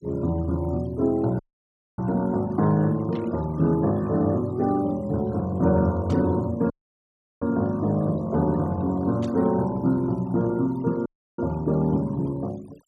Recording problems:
noise reduction artefacts; signal-to-artefact ratio 26 dB
dropout; at 1.5 s for 0.5 s, at 6.5 s for 0.5 s and at 11 s
static burst; at 3 s, at 6 s and at 9 s; peak -15 dB vs average level

